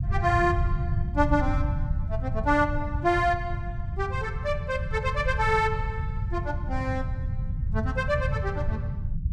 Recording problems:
rumble; below 120 Hz, SNR 3 dB

